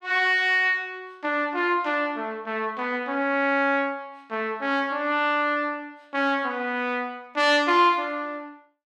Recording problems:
none

